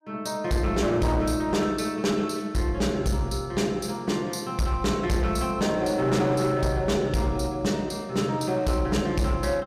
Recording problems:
distorted audio; hard clipping, uneven, signal-to-distortion ratio 11 dB

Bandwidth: 15.5 kHz